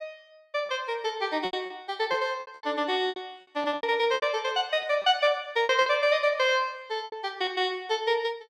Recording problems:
packet loss; 11% of the sound replaced, filled with repeated pitch periods

